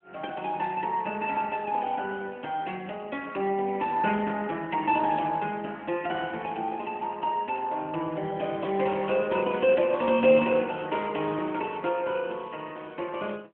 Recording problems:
phone line; 260 Hz to 3.3 kHz, AMR-NB
static burst; at 4 s and at 9 s; peak -8 dB vs average level

